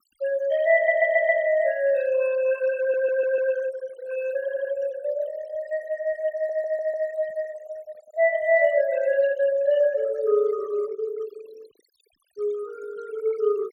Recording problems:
denoising artefacts; signal-to-artefact ratio 22 dB
audio stuttering; 4 times, first at 1 s

